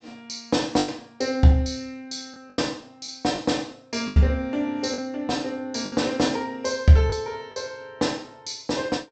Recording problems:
treble cut off; nothing above 8 kHz
lost packets; 5% of the sound replaced, filled with the last packet

